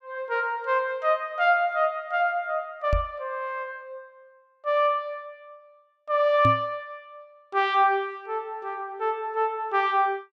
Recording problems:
microphone bump; at 3 s and at 6.5 s; peak +3 dB vs average level

